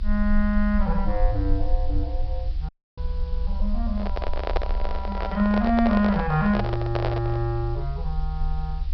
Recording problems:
treble missing; nothing above 5.5 kHz
background hiss; slope 0 dB per octave, SNR 27 dB
rumble; below 64 Hz, strongest tone 26 Hz, SNR 5 dB
dropout; at 2.5 s
handling noise; from 4 to 7.5 s; peak +3 dB vs average level

